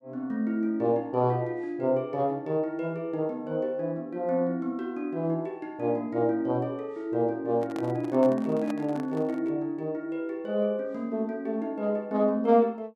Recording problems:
microphone handling noise; from 7.5 to 9.5 s; peak -5 dB vs average level

